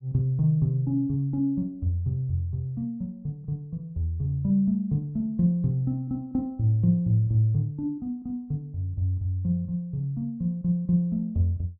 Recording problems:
none

